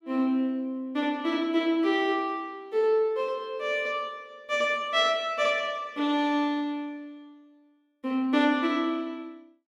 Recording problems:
none

